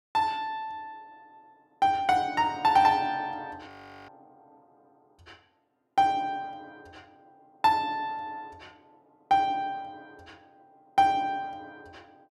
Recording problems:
audio freezing; at 3.5 s

